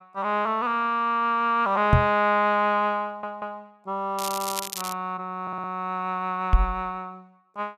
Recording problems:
microphone thump; at 2 s and at 6.5 s; peak +9 dB vs average level
stutter; at 3 s and at 5.5 s
crackle; at 4 s; loose cable, SNR 7 dB

